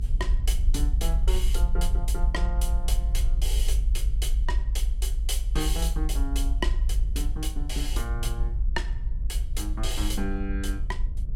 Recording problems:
electrical hum; 60 Hz, harmonics up to 1.3 kHz, SNR 28 dB
low-frequency rumble; below 52 Hz, strongest tone 28 Hz, SNR -6 dB

